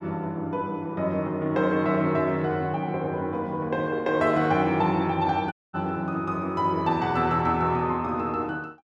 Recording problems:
dropout; at 5.5 s

